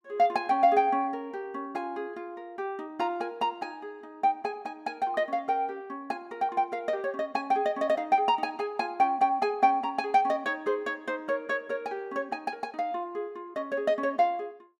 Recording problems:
none

